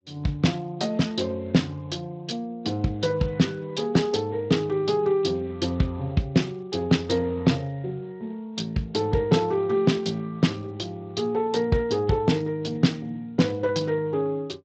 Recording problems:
lossy compression; Speex, log-spectral distance 3 dB, nothing above 7.6 kHz

